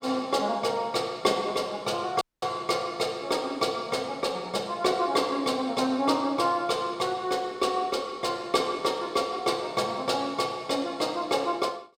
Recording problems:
dropout; at 2 s

